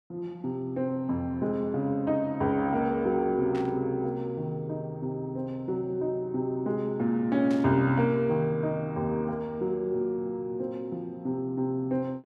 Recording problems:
static burst; at 3.5 s and at 7.5 s; peak -12 dB vs average level

